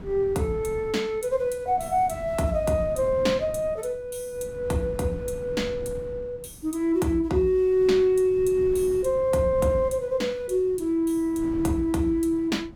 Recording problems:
wind on the microphone; below 240 Hz, SNR 17 dB

